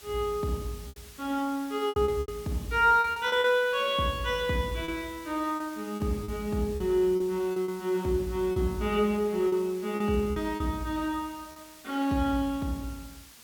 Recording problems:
background hiss; slope +1 dB per octave, SNR 20 dB
packet loss; 8% of the sound replaced, filled with repeated pitch periods

